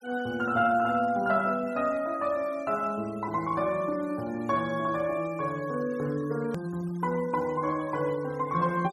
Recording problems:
noise reduction artefacts; signal-to-artefact ratio 24 dB
click at an edit; at 6.5 s

